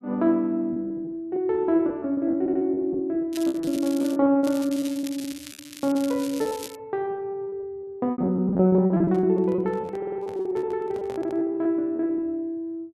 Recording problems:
packet loss; 18% of the sound replaced, filled with repeated pitch periods
audio stuttering; at 2.5 s, at 10 s and at 11 s
crackle; at 3.5 s and from 4.5 to 7 s; loose cable, SNR 16 dB
handling noise; from 9 to 11 s; peak -12 dB vs average level

